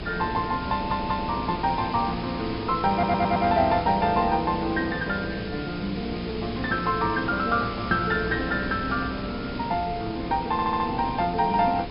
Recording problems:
treble missing; nothing above 5.5 kHz
hum; 60 Hz, harmonics up to 420 Hz, SNR 13 dB
hiss; SNR 14 dB
wind on the microphone; below 650 Hz, SNR 14 dB
audio stuttering; at 0.5 s, at 3 s and at 11 s

